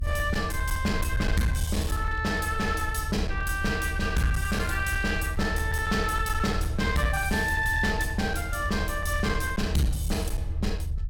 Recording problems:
distorted audio; hard clipping, uneven, signal-to-distortion ratio 11 dB
low-frequency rumble; below 78 Hz, SNR 4 dB

